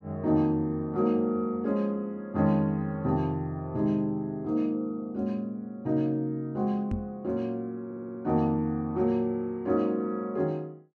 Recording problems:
knock on the microphone; at 7 s; peak 0 dB vs average level
audio stuttering; at 8 s

